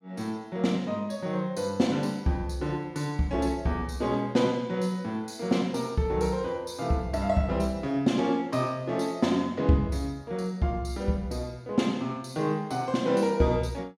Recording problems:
none

